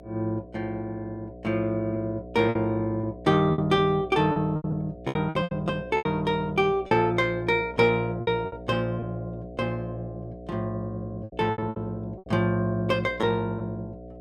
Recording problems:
electrical hum; 60 Hz, harmonics up to 720 Hz, SNR 15 dB
lost packets; 8% of the sound replaced, filled with repeated pitch periods

